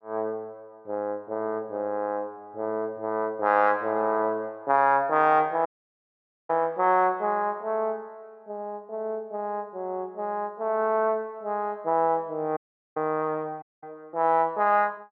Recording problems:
audio cutting out; at 5.5 s for 1 s, at 13 s and at 14 s

